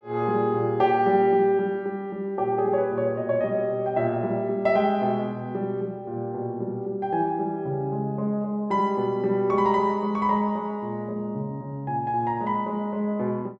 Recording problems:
none

